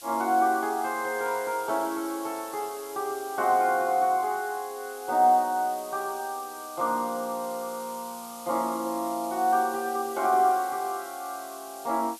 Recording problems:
background hiss; SNR 16 dB

